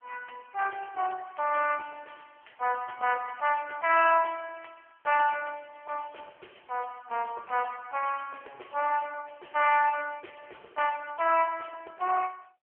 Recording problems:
phone line; 430 Hz to 2.8 kHz, AMR-NB

